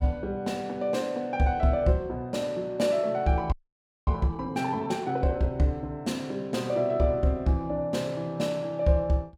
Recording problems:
audio freezing; at 3.5 s for 0.5 s

